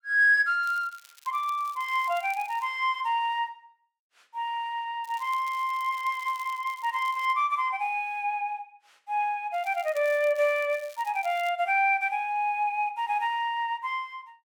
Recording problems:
crackle; from 0.5 to 2.5 s, from 5 to 7.5 s and from 9.5 to 11 s; loose cable, SNR 24 dB

